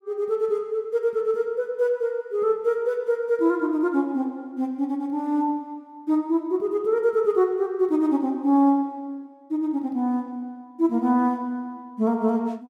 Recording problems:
none

